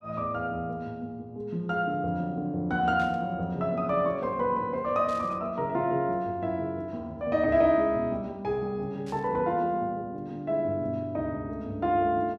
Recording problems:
burst of static; at 3 s, at 5 s and at 9 s; peak -14 dB vs average level

